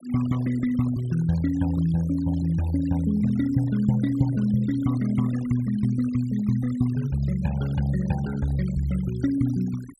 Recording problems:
noise reduction artefacts; signal-to-artefact ratio 20 dB

